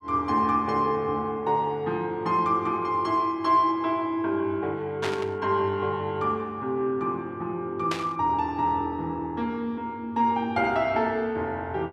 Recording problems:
static burst; at 5 s and at 8 s; peak -1 dB vs average level

